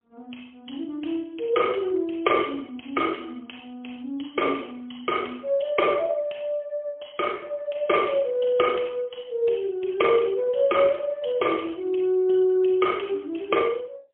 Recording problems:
phone line; 280 Hz to 3.3 kHz, AMR-NB, then MP3

